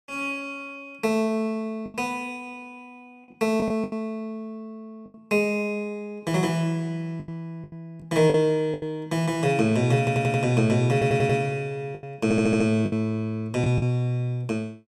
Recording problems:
packet loss; 6% of the sound replaced, filled with the last packet
stutter; at 10 s, at 11 s and at 12 s

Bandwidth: 15.5 kHz